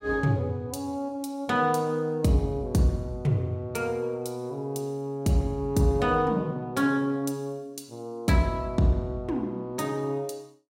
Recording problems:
none

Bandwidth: 16 kHz